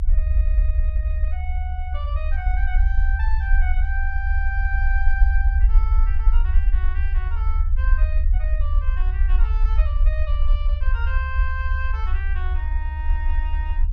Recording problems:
low-frequency rumble; below 60 Hz, SNR -12 dB

